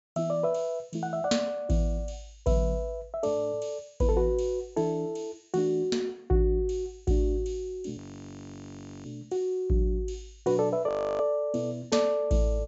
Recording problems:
low-pass filter; nothing above 8 kHz
frozen audio; at 8 s for 1 s and at 11 s

